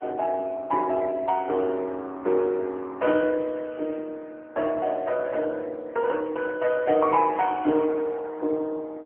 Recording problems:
telephone audio; 260 Hz to 3.4 kHz, AMR-NB

